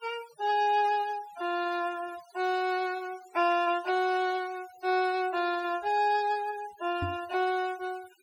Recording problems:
noise reduction artefacts; signal-to-artefact ratio 18 dB
knock on the microphone; at 7 s; peak -2 dB vs average level

